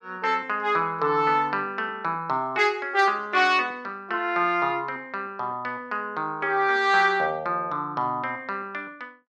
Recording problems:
none

